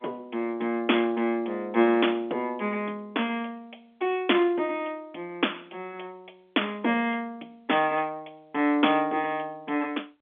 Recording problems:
phone line; 240 Hz to 3.5 kHz, G.711

